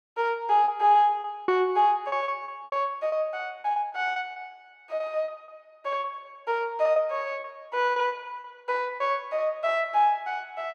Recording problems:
lost packets; 10% of the sound replaced, filled with repeated pitch periods

